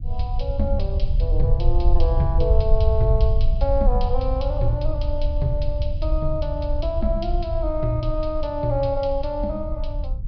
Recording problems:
treble missing; nothing above 5.5 kHz
low-frequency rumble; below 66 Hz, SNR -2 dB

